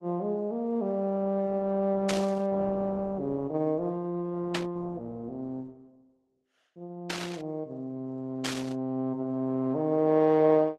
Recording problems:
lossy compression; Opus, log-spectral distance 2 dB
static burst; 4 times, first at 2 s; peak +2 dB vs average level

